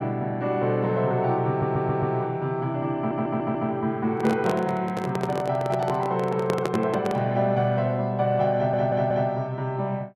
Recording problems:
stutter; at 1.5 s, at 3 s and at 8.5 s
microphone handling noise; from 4 to 7 s; peak +2 dB vs average level

